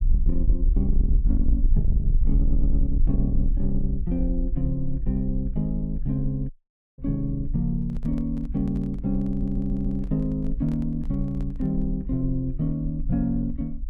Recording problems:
distortion; soft clipping, signal-to-distortion ratio 10 dB
low-frequency rumble; below 50 Hz, strongest tone 22 Hz, SNR 2 dB
audio stuttering; at 2.5 s and at 9.5 s
dropout; at 6.5 s
handling noise; from 8 to 12 s; peak -11 dB vs average level

